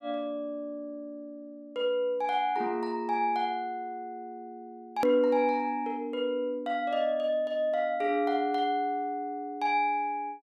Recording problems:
click at an edit; at 5 s

